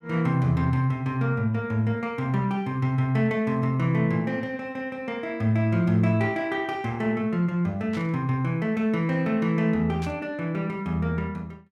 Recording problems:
static burst; at 8 s and at 10 s; peak -12 dB vs average level

